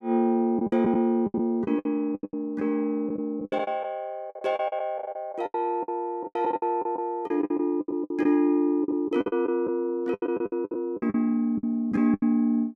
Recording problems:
packet loss; 17% of the sound replaced, filled with the last packet

